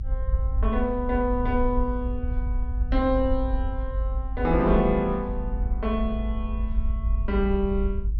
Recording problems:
low-pass filter; nothing above 6.2 kHz
low-frequency rumble; below 58 Hz, strongest tone 52 Hz, SNR 2 dB

